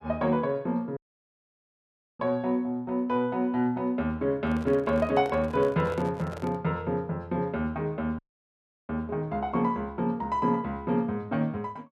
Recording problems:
dropout; at 1 s for 1 s and at 8 s for 0.5 s
handling noise; from 4.5 to 6.5 s; peak -8 dB vs average level

